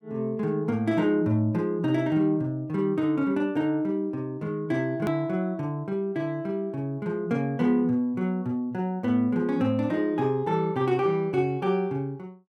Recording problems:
click at an edit; at 5 s

